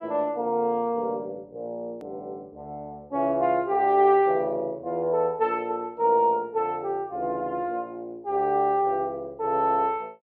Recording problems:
hard cut with a click; at 2 s

